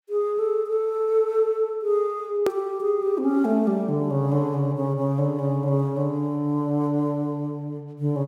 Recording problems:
hard cut with a click; at 2.5 s

